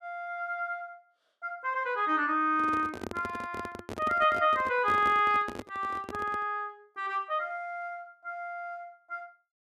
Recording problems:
handling noise; from 2.5 to 6.5 s; peak -5 dB vs average level

